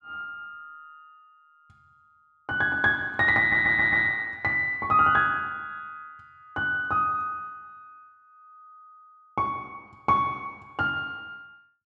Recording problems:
stutter; at 3.5 s

